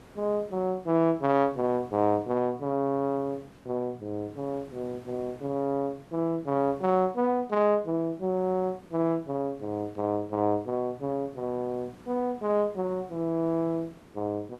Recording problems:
background hiss; slope -7 dB per octave, SNR 24 dB

